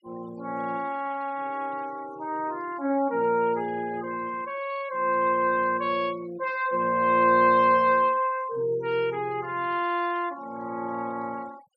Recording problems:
denoising artefacts; signal-to-artefact ratio 25 dB

